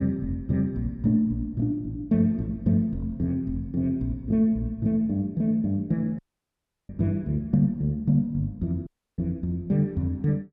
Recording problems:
audio cutting out; at 6 s for 0.5 s and at 9 s

